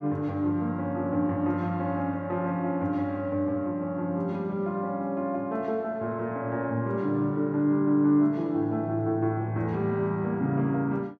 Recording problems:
none

